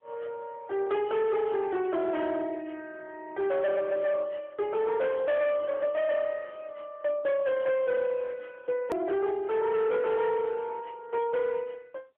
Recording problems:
phone line; 150 Hz to 3 kHz, AMR-NB
distorted audio; hard clipping, signal-to-distortion ratio 11 dB
edit click; at 9 s

